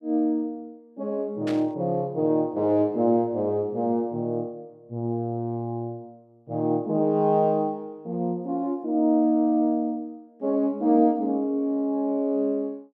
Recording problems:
burst of static; at 1.5 s; peak -9 dB vs average level

